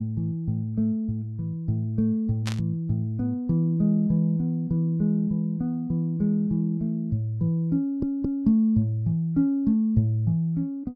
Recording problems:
static burst; at 2.5 s; peak -4 dB vs average level
stutter; at 8 s

